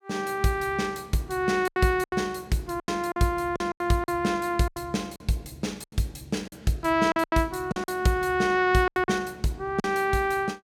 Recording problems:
lost packets; 10% of the sound replaced, filled with silence

